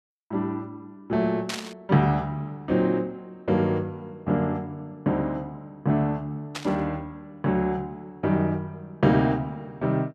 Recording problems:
burst of static; at 1.5 s and at 6.5 s; peak 0 dB vs average level

